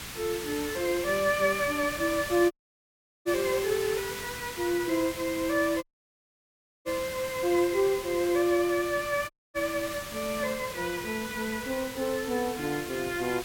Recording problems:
hiss; SNR 9 dB
dropout; at 2.5 s for 0.5 s, at 6 s for 1 s and at 9.5 s

